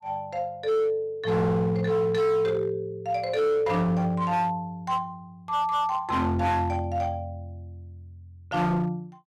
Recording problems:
distortion; hard clipping, signal-to-distortion ratio 10 dB

